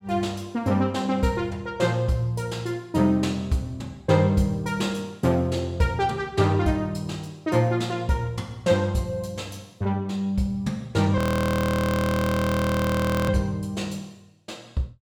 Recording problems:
frozen audio; at 11 s for 2 s

